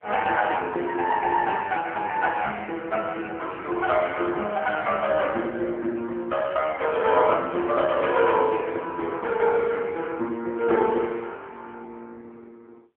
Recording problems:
telephone audio; 260 Hz to 3.1 kHz, AMR-NB

